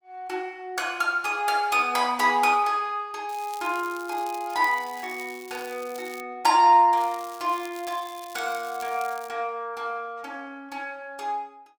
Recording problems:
crackling; from 3.5 to 6 s and from 7 to 9.5 s; loose cable, SNR 20 dB

